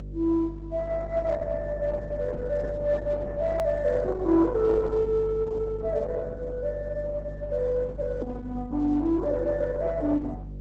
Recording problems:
lossy codec; Opus, log-spectral distance 3 dB
electrical hum; 50 Hz, harmonics up to 600 Hz, SNR 12 dB
edit click; at 3.5 s

